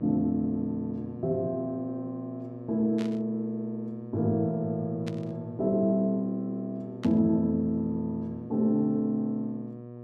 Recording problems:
hum; 60 Hz, harmonics up to 1.1 kHz, SNR 13 dB
static burst; at 3 s, at 5 s and at 7 s; peak -9 dB vs average level

